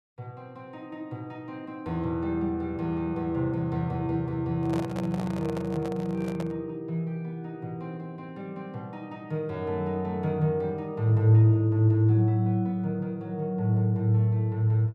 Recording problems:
handling noise; from 4.5 to 6.5 s; peak -5 dB vs average level

